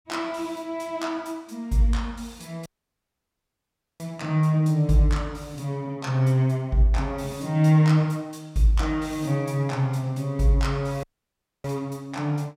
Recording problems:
audio cutting out; at 2.5 s for 1.5 s and at 11 s for 0.5 s

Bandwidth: 16 kHz